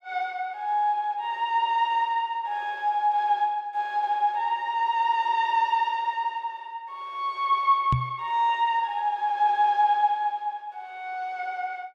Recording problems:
microphone thump; at 8 s; peak +3 dB vs average level

